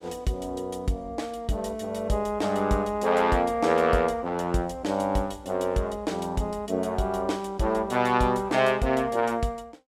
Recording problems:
none

